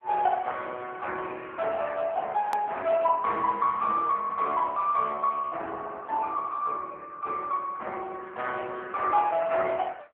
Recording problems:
telephone audio; 340 Hz to 3.4 kHz, AMR-NB
click at an edit; at 2.5 s

